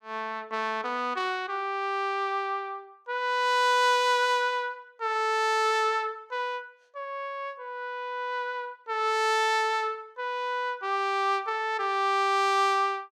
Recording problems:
none

